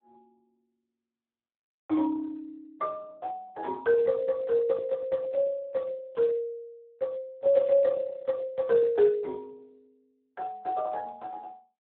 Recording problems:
telephone audio; 280 Hz to 3 kHz, Speex

